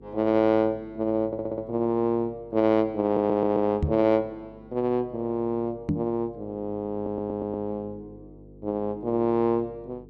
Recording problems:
hum; 50 Hz, harmonics up to 450 Hz, SNR 23 dB
audio stuttering; at 1.5 s, at 3 s and at 7 s
knock on the microphone; at 4 s and at 6 s; peak +4 dB vs average level

